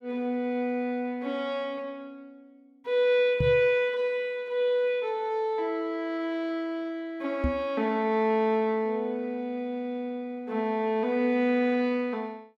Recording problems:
knock on the microphone; at 3.5 s and at 7.5 s; peak +4 dB vs average level

